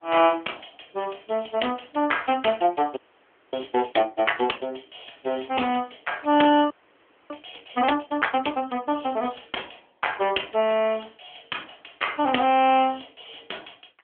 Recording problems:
phone line; 240 Hz to 3.3 kHz, AMR-NB
audio freezing; at 3 s for 0.5 s and at 6.5 s for 0.5 s

